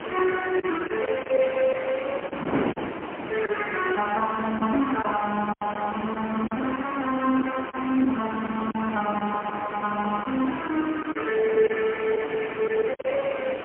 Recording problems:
phone line; 220 Hz to 3.1 kHz, AMR-NB, then MP3
background hiss; SNR 9 dB
wind on the microphone; below 770 Hz, SNR 13 dB
lost packets; 5% of the sound replaced, filled with silence

